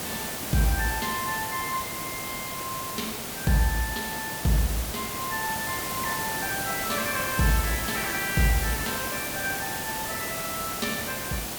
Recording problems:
hiss; slope -3 dB per octave, SNR 1 dB

